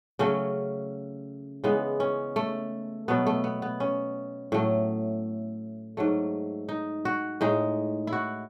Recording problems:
none

